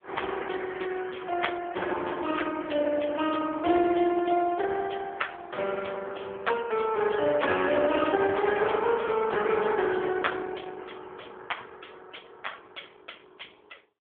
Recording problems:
phone line; 300 Hz to 3.4 kHz, AMR-NB

